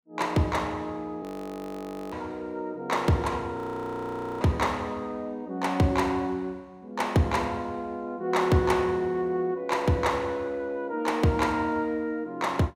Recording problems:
frozen audio; at 1 s for 1 s and at 3.5 s for 1 s

